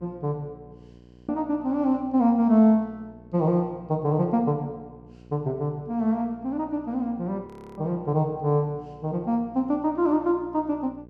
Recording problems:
electrical hum; 60 Hz, harmonics up to 1 kHz, SNR 24 dB
audio freezing; at 1 s and at 7.5 s

